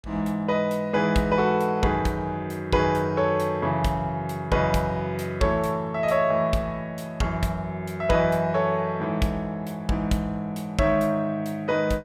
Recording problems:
none

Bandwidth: 16.5 kHz